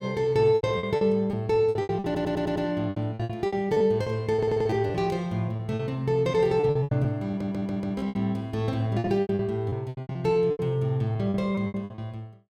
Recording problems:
packet loss; 18% of the sound replaced, filled with repeated pitch periods
audio stuttering; at 2 s, at 4.5 s and at 7.5 s

